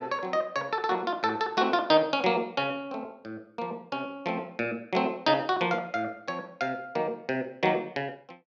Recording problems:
none

